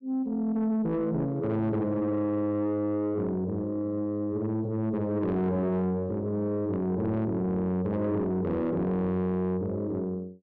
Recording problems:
distortion; soft clipping, signal-to-distortion ratio 11 dB

